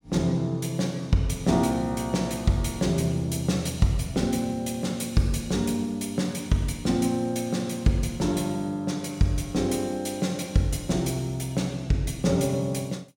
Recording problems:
none

